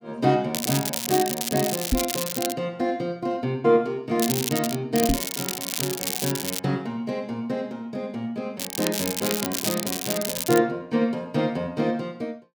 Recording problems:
crackle; 4 times, first at 0.5 s; loose cable, SNR 2 dB
microphone thump; at 2 s and at 5 s; peak +6 dB vs average level

